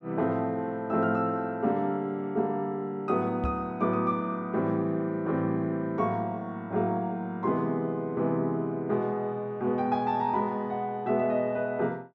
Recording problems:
microphone bump; at 3.5 s; peak -1 dB vs average level

